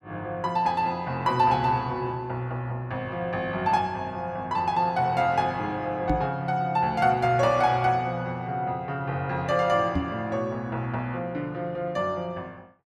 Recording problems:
microphone thump; at 6 s and at 10 s; peak +3 dB vs average level

